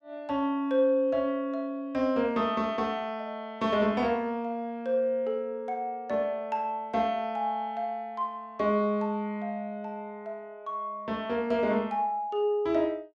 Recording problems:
none

